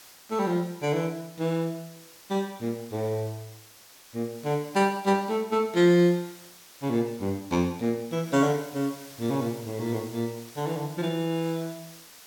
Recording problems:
hiss; slope 0 dB per octave, SNR 20 dB

